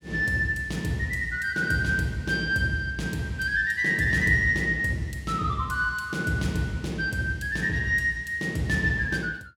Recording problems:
none

